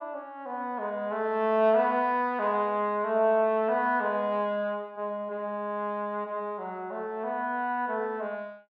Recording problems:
none

